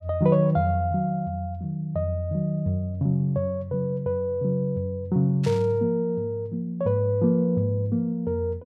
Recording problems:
static burst; at 5.5 s; peak -10 dB vs average level

